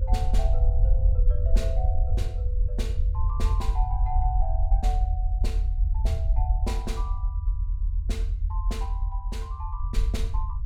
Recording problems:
low-frequency rumble; below 64 Hz, SNR -11 dB

